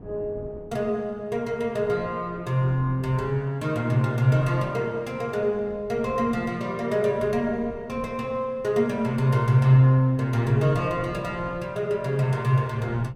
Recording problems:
wind noise; below 310 Hz, SNR 20 dB

